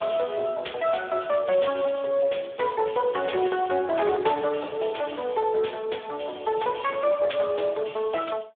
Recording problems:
phone line; 320 Hz to 3.6 kHz, Speex

